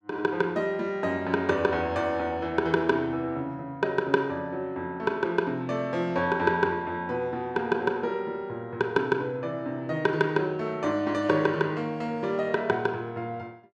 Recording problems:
none

